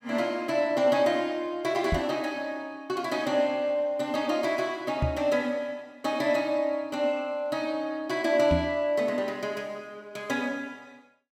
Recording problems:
knock on the microphone; at 2 s, at 5 s and at 8.5 s; peak +4 dB vs average level

